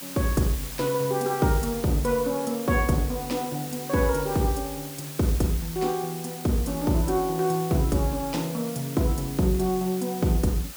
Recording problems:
hiss; slope 0 dB per octave, SNR 11 dB

